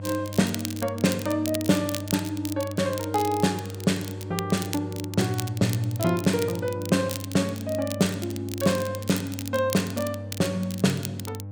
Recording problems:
hum; 50 Hz, harmonics up to 800 Hz, SNR 10 dB
crackling; vinyl, SNR 11 dB

